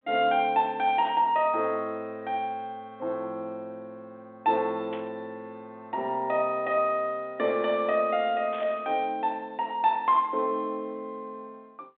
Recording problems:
telephone audio; 240 Hz to 3.8 kHz, G.726
static burst; at 1 s, at 5 s and at 8.5 s; peak -11 dB vs average level

